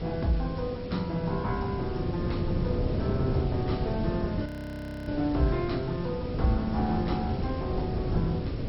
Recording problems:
lossy codec; MP2, log-spectral distance 7 dB, nothing above 5.3 kHz
electrical hum; 50 Hz, harmonics up to 550 Hz, SNR 20 dB
hiss; slope -1 dB per octave, SNR 17 dB
wind noise; below 270 Hz, SNR 1 dB
frozen audio; at 4.5 s for 0.5 s

